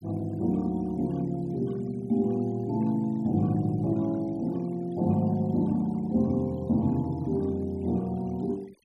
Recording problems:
noise reduction artefacts; signal-to-artefact ratio 27 dB

